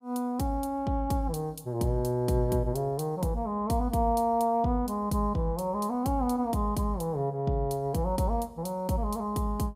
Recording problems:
none

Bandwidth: 15.5 kHz